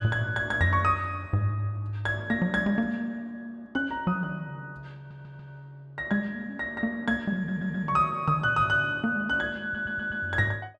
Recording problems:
audio stuttering; at 5 s, at 7.5 s and at 9.5 s

